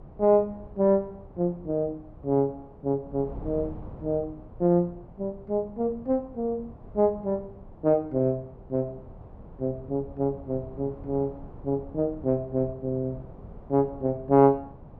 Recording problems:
wind on the microphone; below 310 Hz, SNR 18 dB

